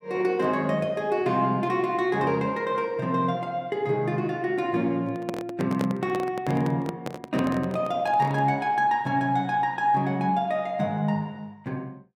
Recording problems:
handling noise; from 5 to 8.5 s; peak -1 dB vs average level

